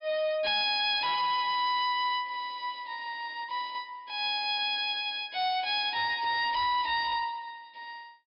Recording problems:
treble cut off; nothing above 5.5 kHz
distorted audio; hard clipping, signal-to-distortion ratio 10 dB

